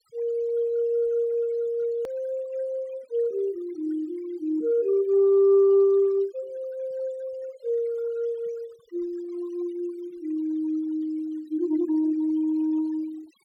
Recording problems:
noise reduction artefacts; signal-to-artefact ratio 27 dB
click at an edit; at 2 s

